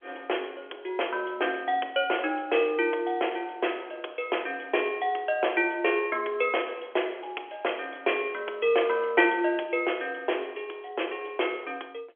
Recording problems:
telephone audio; 280 Hz to 3.4 kHz, G.711

